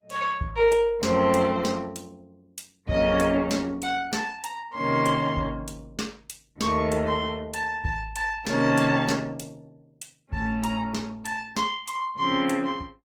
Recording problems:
codec artefacts; Opus, log-spectral distance 3 dB, nothing above 19 kHz

